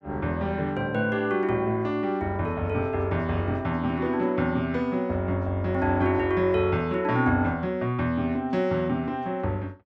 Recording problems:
none

